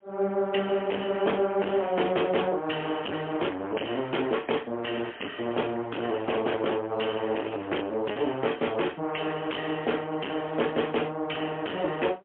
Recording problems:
telephone audio; 260 Hz to 3.3 kHz, AMR-NB, then MP3
distorted audio; hard clipping, signal-to-distortion ratio 8 dB
lost packets; 0.3% of the sound replaced, filled with repeated pitch periods

